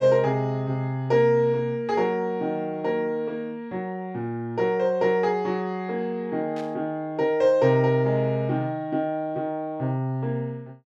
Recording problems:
static burst; at 6.5 s; peak -15 dB vs average level

